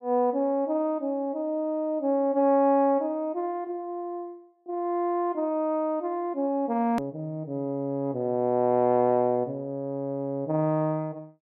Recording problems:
edit click; at 7 s

